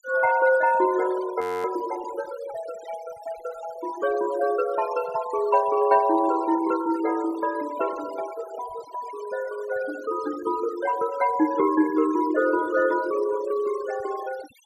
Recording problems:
denoising artefacts; signal-to-artefact ratio 16 dB
frozen audio; at 1.5 s

